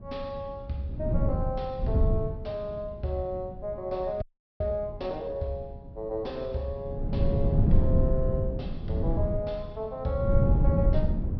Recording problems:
low-pass filter; nothing above 5.5 kHz
wind on the microphone; below 140 Hz, SNR -5 dB
audio freezing; at 4 s

